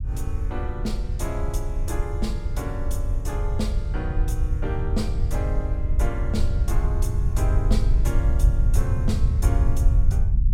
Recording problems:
low-frequency rumble; below 78 Hz, SNR -8 dB

